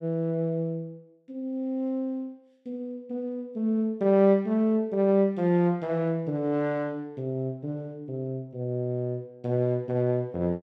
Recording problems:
none

